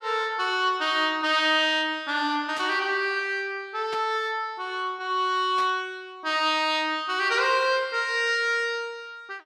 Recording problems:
static burst; at 2.5 s, at 4 s and at 5.5 s; peak -9 dB vs average level

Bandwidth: 13.5 kHz